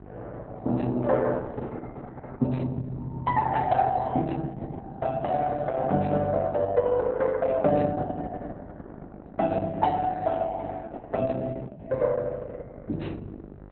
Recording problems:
codec artefacts; Opus, log-spectral distance 3 dB, nothing above 4 kHz
hum; 50 Hz, harmonics up to 1.5 kHz, SNR 20 dB

